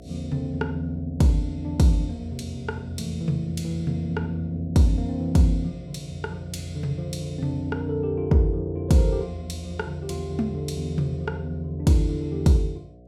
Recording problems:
hum; 60 Hz, harmonics up to 720 Hz, SNR 20 dB

